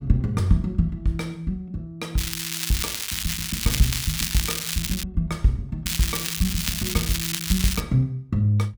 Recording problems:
crackle; from 2 to 5 s and from 6 to 8 s; loose cable, SNR 1 dB

